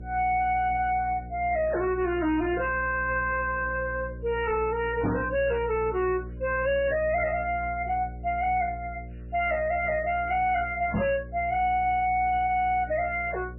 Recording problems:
codec artefacts; MP3, log-spectral distance 3 dB
distorted audio; hard clipping, signal-to-distortion ratio 9 dB
hum; 60 Hz, harmonics up to 600 Hz, SNR 14 dB
microphone bump; at 5 s and at 11 s; peak +3 dB vs average level

